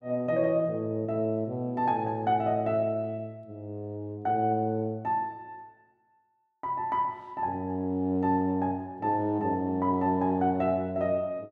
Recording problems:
none

